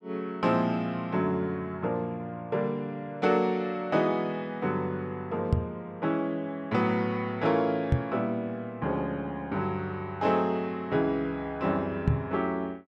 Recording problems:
microphone bump; at 5.5 s, at 8 s and at 12 s; peak +8 dB vs average level

